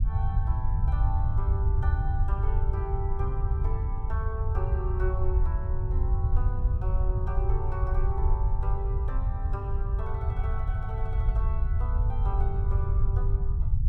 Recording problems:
low-frequency rumble; below 84 Hz, SNR -11 dB

